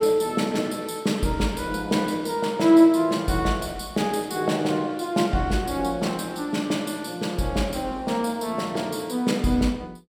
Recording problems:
none

